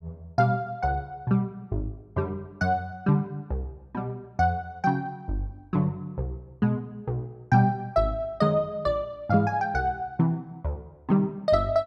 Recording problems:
none

